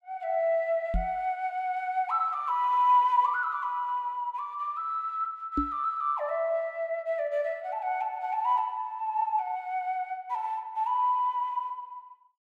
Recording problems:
knock on the microphone; at 1 s and at 5.5 s; peak +3 dB vs average level

